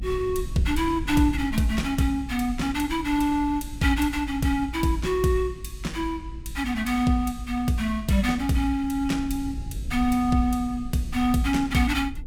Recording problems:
low-frequency rumble; below 72 Hz, SNR 12 dB

